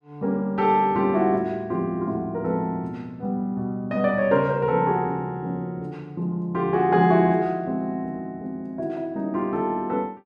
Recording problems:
none

